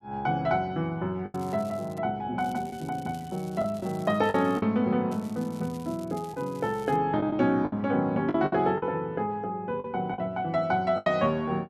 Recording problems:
lost packets; 5% of the sound replaced, filled with the last packet
crackling; at 1.5 s, from 2.5 to 4.5 s and from 5 to 7 s; loose cable, SNR 25 dB

